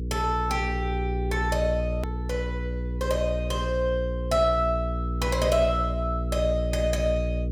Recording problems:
hum; 60 Hz, harmonics up to 480 Hz, SNR 3 dB
edit click; at 2 s

